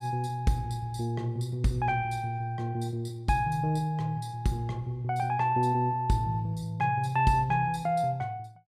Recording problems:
none

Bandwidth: 15 kHz